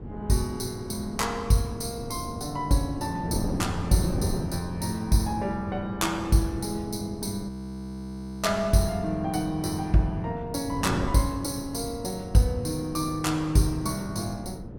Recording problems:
wind noise; below 300 Hz, SNR 9 dB
frozen audio; at 7.5 s for 1 s

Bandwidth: 17.5 kHz